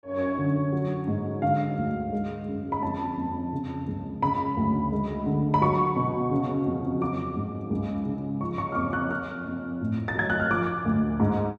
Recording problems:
none

